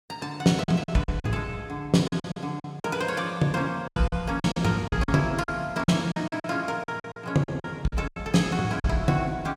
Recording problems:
lost packets; 13% of the sound replaced, filled with silence

